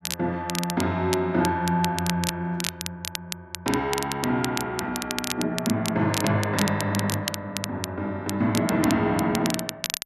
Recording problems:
crackle; vinyl, SNR 7 dB

